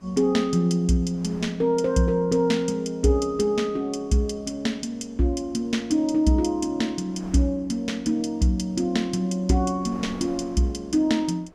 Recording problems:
wind noise; below 810 Hz, SNR 26 dB

